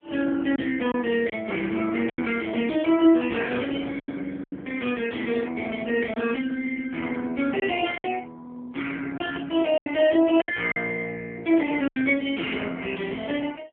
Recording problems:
telephone audio; 220 Hz to 3.3 kHz, AMR-NB
packet loss; 5% of the sound replaced, filled with silence
burst of static; at 2.5 s, at 5 s and at 7 s; peak -14 dB vs average level

